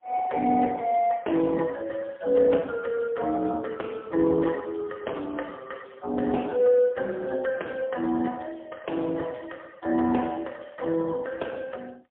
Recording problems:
telephone audio; 220 Hz to 3.4 kHz, AMR-NB, then MP3

